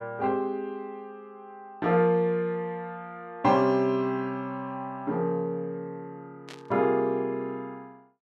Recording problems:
burst of static; at 6.5 s; peak -12 dB vs average level

